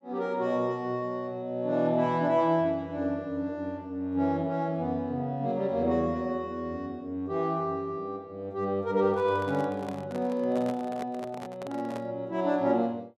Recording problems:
microphone handling noise; from 9 to 12 s; peak -6 dB vs average level

